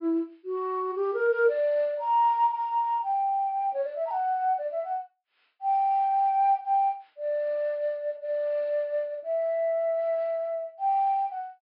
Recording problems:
treble missing; nothing above 5.5 kHz

